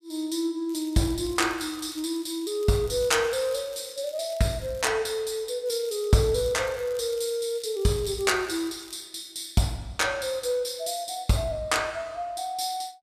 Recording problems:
crackling; from 0.5 to 5 s and from 5.5 to 9 s; loose cable, SNR 21 dB

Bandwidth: 14.5 kHz